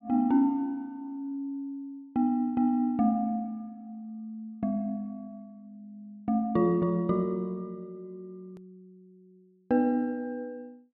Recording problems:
hard cut with a click; at 8.5 s

